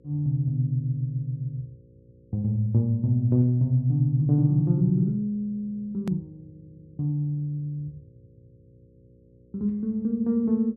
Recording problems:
electrical hum; 60 Hz, harmonics up to 540 Hz, SNR 32 dB
click at an edit; at 6 s

